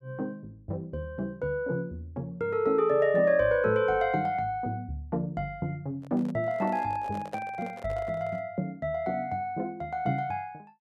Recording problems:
handling noise; from 6 to 8.5 s; peak -6 dB vs average level

